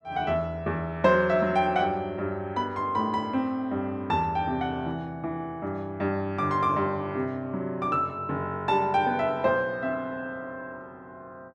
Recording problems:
none

